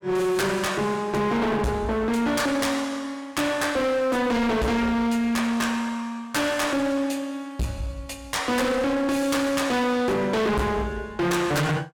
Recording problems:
distorted audio; hard clipping, uneven, signal-to-distortion ratio 5 dB

